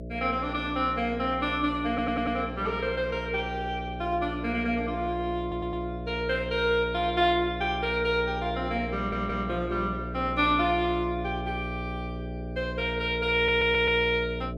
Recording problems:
mains hum; 60 Hz, harmonics up to 660 Hz, SNR 9 dB
audio stuttering; 4 times, first at 2 s

